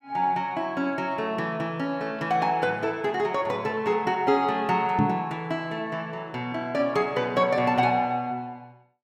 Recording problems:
microphone thump; at 5 s; peak +5 dB vs average level

